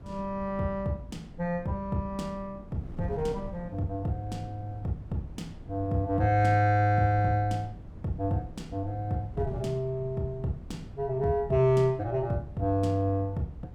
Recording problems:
wind on the microphone; below 180 Hz, SNR 16 dB

